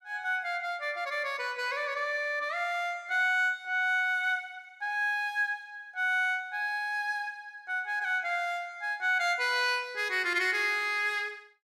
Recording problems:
none

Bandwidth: 14.5 kHz